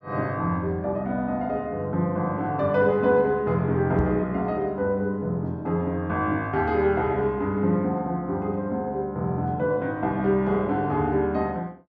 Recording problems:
microphone bump; at 4 s; peak 0 dB vs average level

